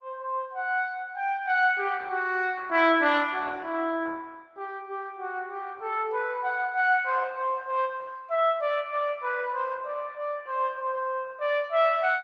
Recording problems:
codec artefacts; Opus, log-spectral distance 3 dB

